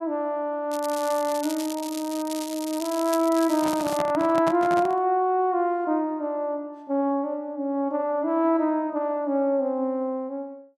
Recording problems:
crackling; from 0.5 to 4 s; loose cable, SNR 13 dB
microphone handling noise; from 3.5 to 5 s; peak -1 dB vs average level

